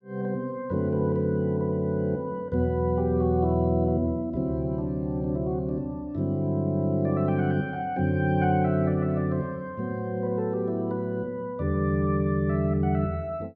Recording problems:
none

